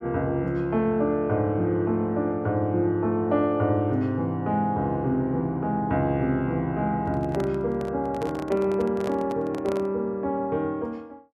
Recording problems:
microphone handling noise; from 7 to 10 s; peak -5 dB vs average level

